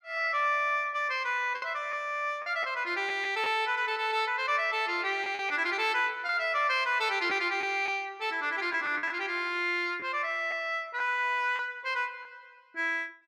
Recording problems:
lost packets; 4% of the sound replaced, filled with the last packet

